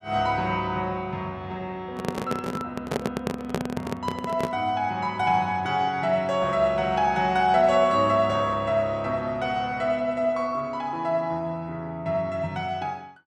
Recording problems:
handling noise; from 2 to 4.5 s; peak +3 dB vs average level

